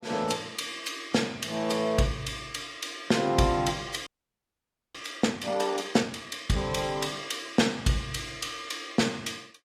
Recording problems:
lossy codec; AAC, log-spectral distance 4 dB, nothing above 14.3 kHz
audio freezing; at 4 s for 1 s

